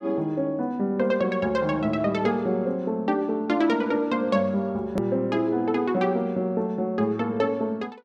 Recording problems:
click at an edit; at 5 s

